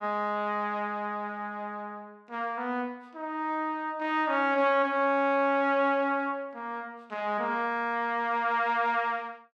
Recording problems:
none

